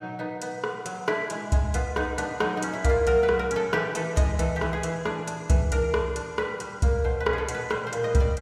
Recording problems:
none

